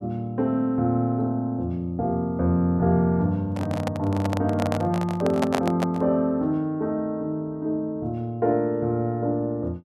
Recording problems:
handling noise; from 3.5 to 6 s; peak +4 dB vs average level

